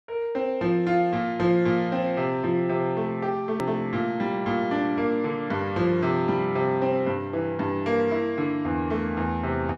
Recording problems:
click at an edit; at 3.5 s

